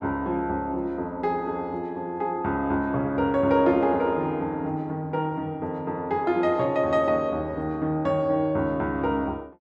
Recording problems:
none

